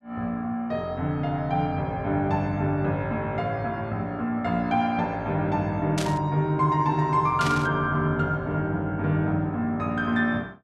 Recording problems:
static burst; at 6 s and at 7.5 s; peak -2 dB vs average level

